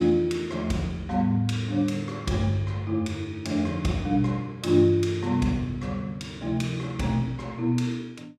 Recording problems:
none

